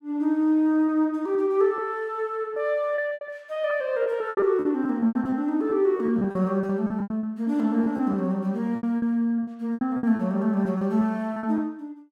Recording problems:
packet loss; 13% of the sound replaced, filled with repeated pitch periods

